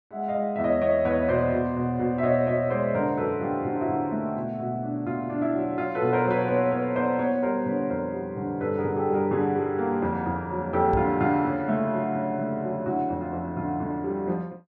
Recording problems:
knock on the microphone; at 11 s; peak -2 dB vs average level

